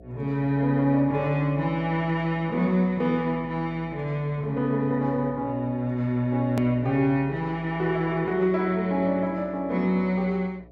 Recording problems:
hum; 60 Hz, harmonics up to 720 Hz, SNR 23 dB
edit click; at 6.5 s

